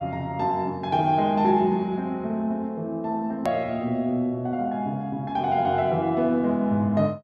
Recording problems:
edit click; at 3.5 s

